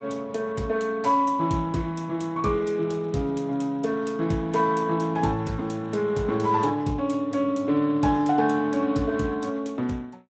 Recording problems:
codec artefacts; Speex, log-spectral distance 3 dB, nothing above 8 kHz

